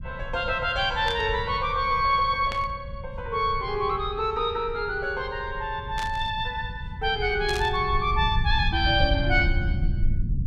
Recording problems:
rumble; below 96 Hz, SNR 7 dB
static burst; 4 times, first at 1 s; peak -5 dB vs average level

